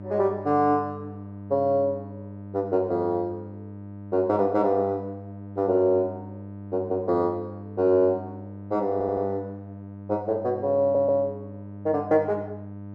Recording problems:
electrical hum; 50 Hz, harmonics up to 1 kHz, SNR 14 dB
audio stuttering; at 9 s and at 11 s

